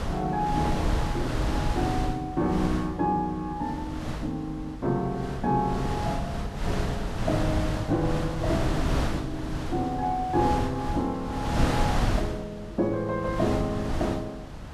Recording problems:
mains hum; 50 Hz, harmonics up to 300 Hz, SNR 17 dB
wind on the microphone; below 560 Hz, SNR 2 dB

